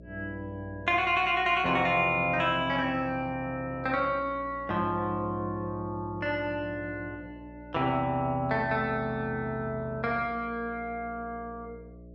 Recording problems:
electrical hum; 60 Hz, harmonics up to 660 Hz, SNR 20 dB

